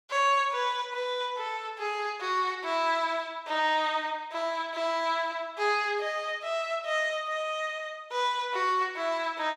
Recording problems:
none

